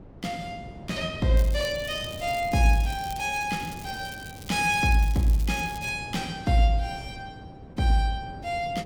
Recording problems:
wind noise; below 320 Hz, SNR 16 dB
crackling; from 1.5 to 6 s; loose cable, SNR 18 dB

